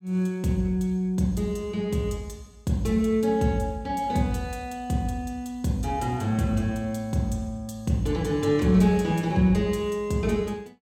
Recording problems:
none

